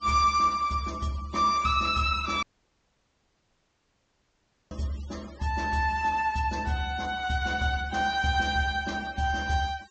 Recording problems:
low-pass filter; nothing above 8 kHz
denoising artefacts; signal-to-artefact ratio 22 dB
audio cutting out; at 2.5 s for 2.5 s

